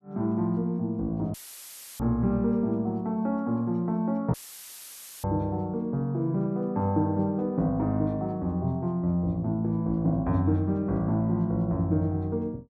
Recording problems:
dropout; at 1.5 s for 0.5 s and at 4.5 s for 1 s; filled with static

